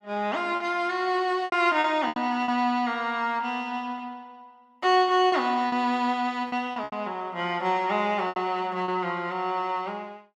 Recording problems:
packet loss; 7% of the sound replaced, filled with repeated pitch periods

